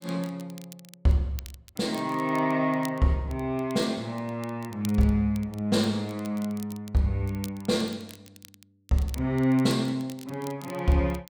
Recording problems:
crackle; vinyl, SNR 21 dB

